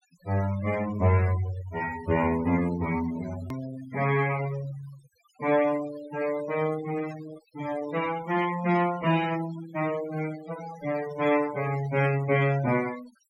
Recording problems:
noise reduction artefacts; signal-to-artefact ratio 15 dB
hard cut with a click; at 3.5 s

